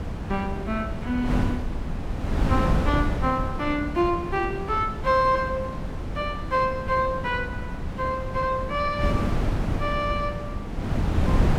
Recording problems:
wind noise; below 250 Hz, SNR 3 dB

